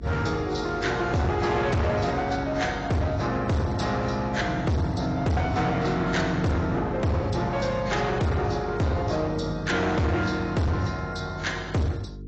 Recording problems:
lossy compression; AAC, log-spectral distance 4 dB, nothing above 7.3 kHz
distortion; hard clipping, uneven, signal-to-distortion ratio 7 dB
hum; 50 Hz, harmonics up to 450 Hz, SNR 14 dB

